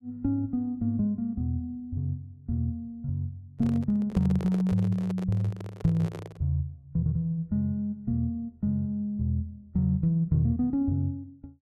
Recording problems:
handling noise; from 3.5 to 6.5 s; peak -6 dB vs average level

